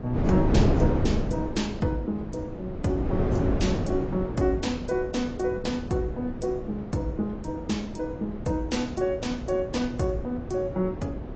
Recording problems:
lossy compression; AAC, log-spectral distance 2 dB, nothing above 7.8 kHz
wind noise; below 360 Hz, SNR 2 dB

